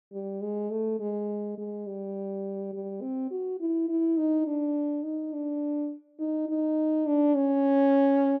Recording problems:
none

